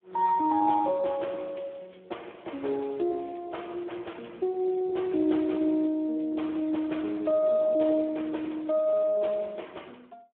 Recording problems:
phone line; 240 Hz to 3.6 kHz, Speex

